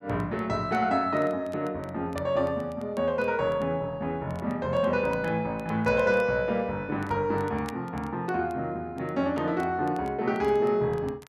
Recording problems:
crackle; vinyl, SNR 28 dB

